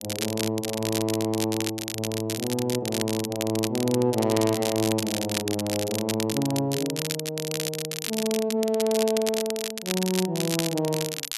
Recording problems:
crackling; vinyl, SNR 4 dB

